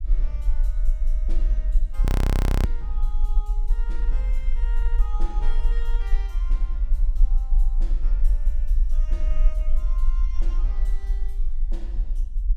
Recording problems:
rumble; below 40 Hz, strongest tone 22 Hz, SNR -19 dB
audio freezing; at 2 s for 0.5 s

